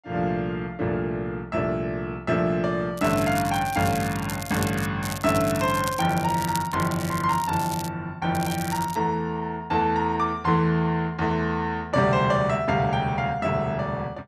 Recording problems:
crackling; from 3 to 5 s, from 5 to 8 s and at 8.5 s; loose cable, SNR 12 dB

